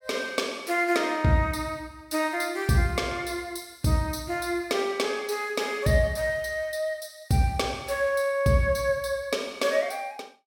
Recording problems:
none

